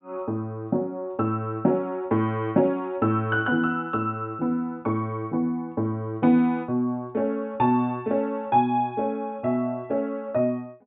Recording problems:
treble cut off; nothing above 4 kHz

